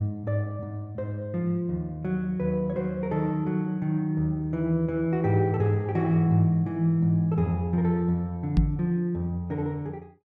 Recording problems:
microphone bump; at 8.5 s; peak +8 dB vs average level

